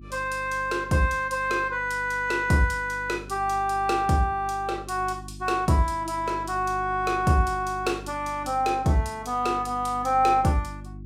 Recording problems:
hum; 50 Hz, harmonics up to 350 Hz, SNR 17 dB

